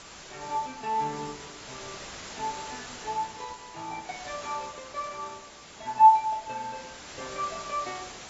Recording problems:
lossy compression; AAC, log-spectral distance 19 dB, nothing above 7.6 kHz
background hiss; slope -2 dB per octave, SNR 14 dB

